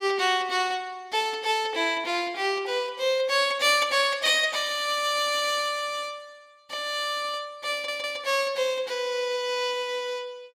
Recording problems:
stutter; at 7.5 s

